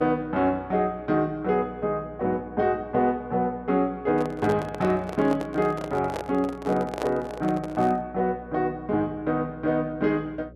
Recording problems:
hum; 60 Hz, harmonics up to 600 Hz, SNR 22 dB
microphone handling noise; from 4 to 8 s; peak -1 dB vs average level

